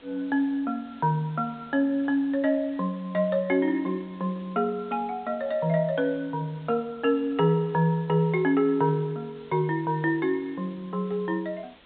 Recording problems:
treble cut off; nothing above 4 kHz
background hiss; SNR 27 dB

